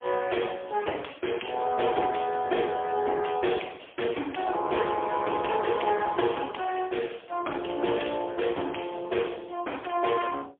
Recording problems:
phone line; 260 Hz to 3.4 kHz, AMR-NB, then MP3

